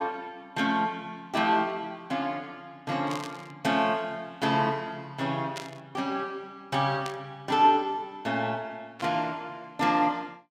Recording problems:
burst of static; 4 times, first at 3 s; peak -4 dB vs average level

